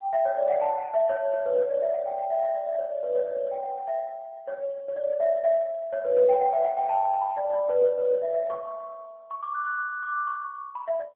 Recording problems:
phone line; 150 Hz to 2.2 kHz, AMR-NB

